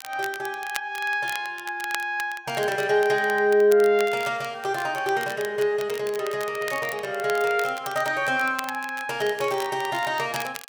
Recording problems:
crackling; vinyl, SNR 15 dB

